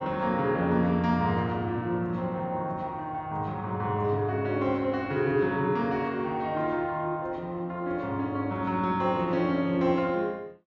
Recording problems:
treble missing; nothing above 8 kHz

